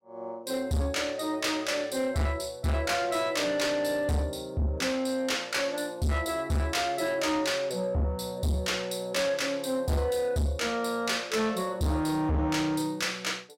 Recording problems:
distortion; soft clipping, signal-to-distortion ratio 7 dB

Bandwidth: 16 kHz